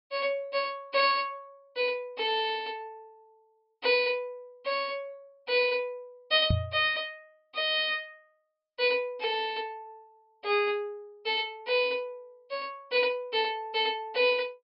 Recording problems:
treble cut off; nothing above 5.5 kHz
microphone thump; at 6.5 s; peak +5 dB vs average level

